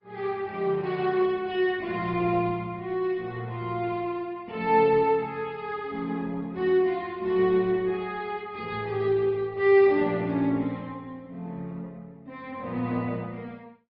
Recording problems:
treble cut off; nothing above 5.2 kHz
codec artefacts; Opus, log-spectral distance 2 dB

